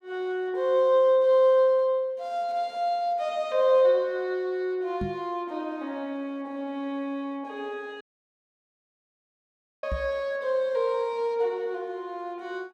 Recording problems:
microphone bump; at 5 s and at 10 s; peak -3 dB vs average level
dropout; at 8 s for 2 s

